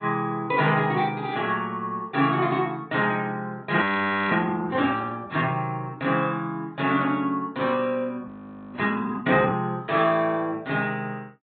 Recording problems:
treble cut off; nothing above 4 kHz
lossy codec; AAC, log-spectral distance 2 dB
audio freezing; at 4 s for 0.5 s and at 8.5 s

